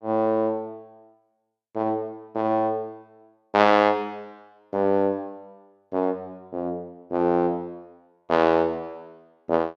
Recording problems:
none

